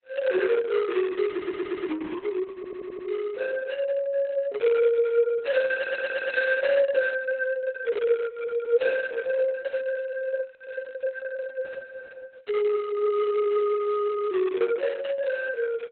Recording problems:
lossy codec; Opus, log-spectral distance 3 dB, nothing above 4.1 kHz
stutter; at 1.5 s, at 2.5 s and at 6 s

